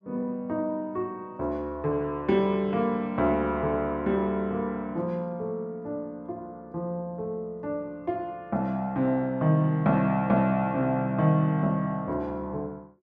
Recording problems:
none

